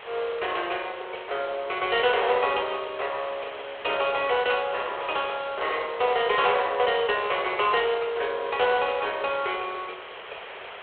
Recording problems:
telephone audio; 370 Hz to 3.5 kHz, G.726
distorted audio; hard clipping, uneven, signal-to-distortion ratio 15 dB
hiss; SNR 15 dB

